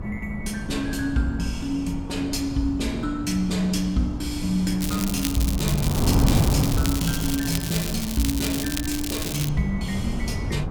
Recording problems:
hum; 60 Hz, harmonics up to 300 Hz, SNR 17 dB
wind noise; below 210 Hz, SNR 3 dB
crackling; from 5 to 9.5 s; loose cable, SNR 4 dB

